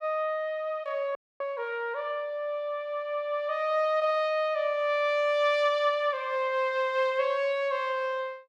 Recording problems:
audio freezing; at 1 s

